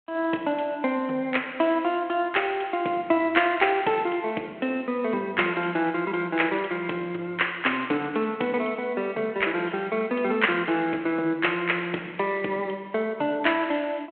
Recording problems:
phone line; 260 Hz to 3.4 kHz, G.726

